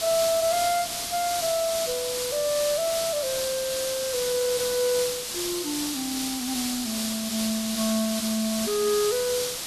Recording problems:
hiss; SNR 2 dB

